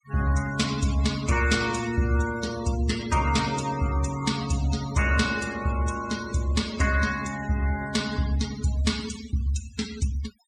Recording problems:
denoising artefacts; signal-to-artefact ratio 12 dB

